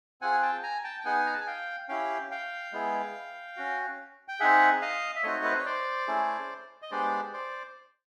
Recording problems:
none

